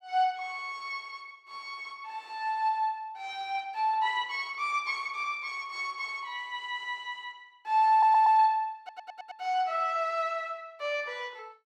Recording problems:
audio stuttering; at 8 s and at 9 s

